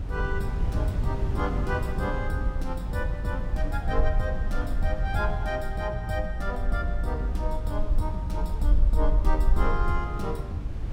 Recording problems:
low-frequency rumble; below 50 Hz, SNR 0 dB
wind noise; below 110 Hz, SNR 2 dB

